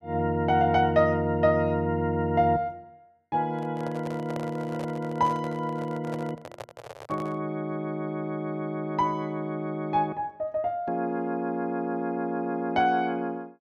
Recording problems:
handling noise; from 3.5 to 7.5 s; peak -6 dB vs average level

